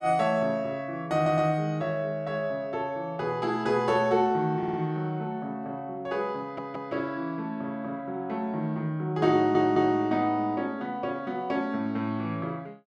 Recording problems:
stutter; 4 times, first at 1 s

